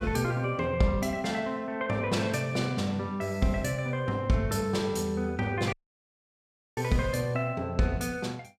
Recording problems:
audio cutting out; at 5.5 s for 1 s

